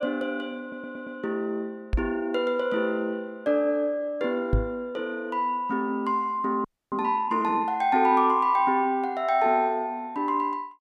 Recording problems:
audio stuttering; at 0.5 s
microphone bump; at 2 s and at 4.5 s; peak +5 dB vs average level
frozen audio; at 6.5 s

